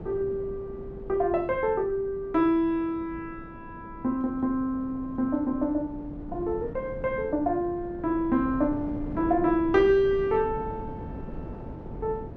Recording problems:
wind on the microphone; below 330 Hz, SNR 13 dB

